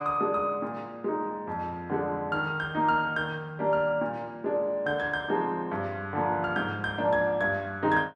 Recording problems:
none

